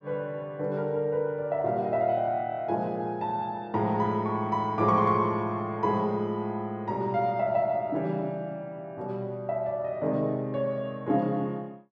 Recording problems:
none

